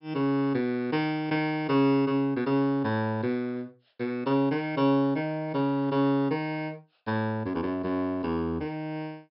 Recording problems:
low-pass filter; nothing above 5.4 kHz

